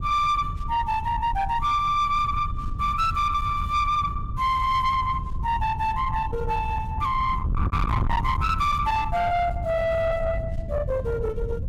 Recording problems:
distortion; soft clipping, signal-to-distortion ratio 8 dB
wind on the microphone; below 170 Hz, SNR 6 dB

